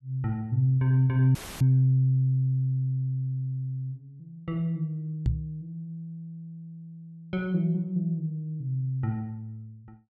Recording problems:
dropout; at 1.5 s; filled with static
microphone thump; at 5.5 s; peak +5 dB vs average level

